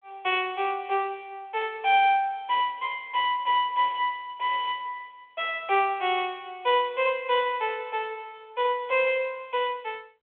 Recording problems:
phone line; 280 Hz to 3.4 kHz, G.726

